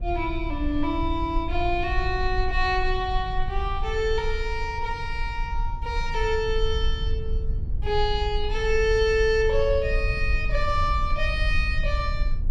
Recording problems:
low-frequency rumble; below 56 Hz, SNR 4 dB

